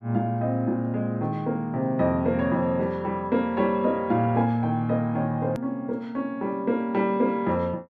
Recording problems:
hard cut with a click; at 5.5 s

